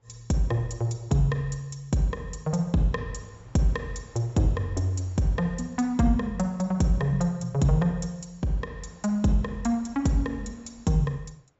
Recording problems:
low-pass filter; nothing above 8 kHz
wind noise; below 990 Hz, SNR 29 dB

